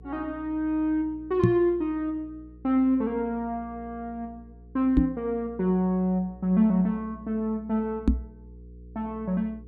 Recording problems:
hum; 60 Hz, harmonics up to 480 Hz, SNR 21 dB
microphone thump; at 1.5 s, at 5 s and at 8 s; peak +8 dB vs average level

